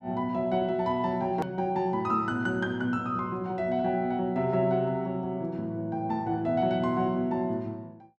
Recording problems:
hard cut with a click; at 1.5 s

